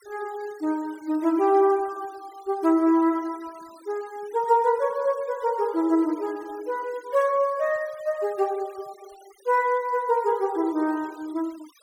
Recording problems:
denoising artefacts; signal-to-artefact ratio 25 dB

